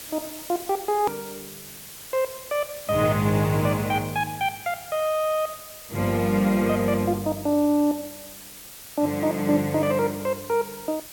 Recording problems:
hiss; slope 0 dB per octave, SNR 14 dB
edit click; at 1 s

